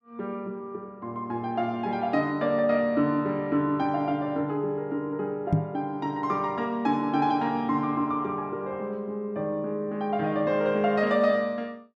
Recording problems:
knock on the microphone; at 5.5 s; peak +8 dB vs average level

